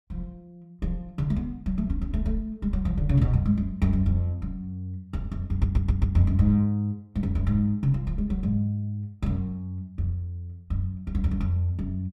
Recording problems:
audio stuttering; at 5.5 s

